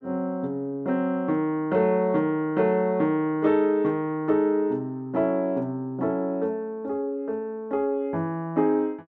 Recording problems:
none

